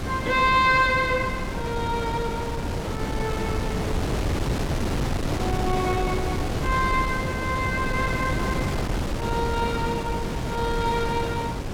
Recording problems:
wind noise; below 510 Hz, SNR 2 dB

